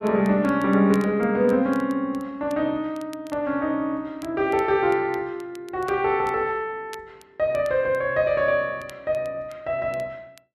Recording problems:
crackling; vinyl, SNR 27 dB

